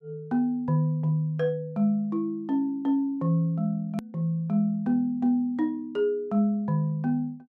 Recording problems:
edit click; at 4 s

